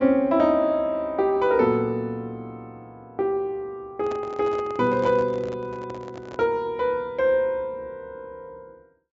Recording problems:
treble cut off; nothing above 8 kHz
handling noise; from 4 to 6.5 s; peak -7 dB vs average level

